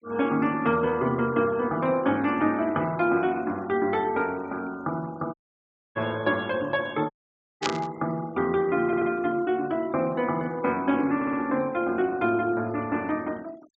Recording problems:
treble cut off; nothing above 8 kHz
denoising artefacts; signal-to-artefact ratio 23 dB
dropout; at 5.5 s for 0.5 s and at 7 s for 0.5 s
burst of static; at 7.5 s; peak +3 dB vs average level
audio stuttering; at 9 s and at 11 s

